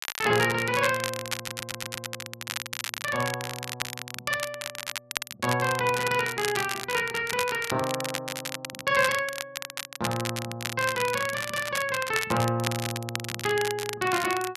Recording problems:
crackle; vinyl, SNR 6 dB
stutter; at 1.5 s

